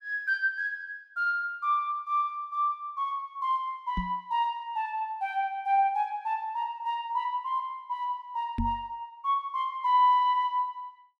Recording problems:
microphone bump; at 4 s and at 8.5 s; peak +2 dB vs average level

